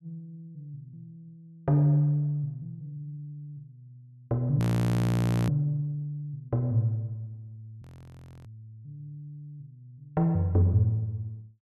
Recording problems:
frozen audio; at 4.5 s for 1 s and at 8 s for 0.5 s

